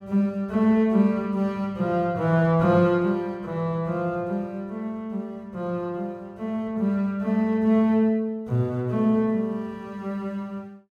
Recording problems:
none

